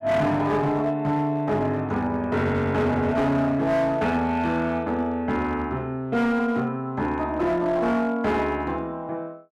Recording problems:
distortion; hard clipping, signal-to-distortion ratio 12 dB

